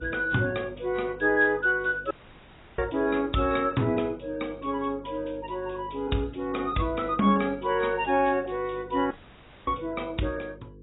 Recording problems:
codec artefacts; AAC, log-spectral distance 6 dB, nothing above 3.8 kHz
hum; 50 Hz, harmonics up to 500 Hz, SNR 21 dB
audio cutting out; at 2 s for 0.5 s and at 9 s for 0.5 s

